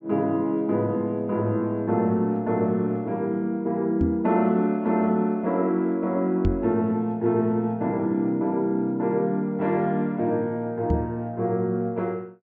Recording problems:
treble missing; nothing above 7.6 kHz
microphone thump; at 4 s, at 6.5 s and at 11 s; peak +3 dB vs average level

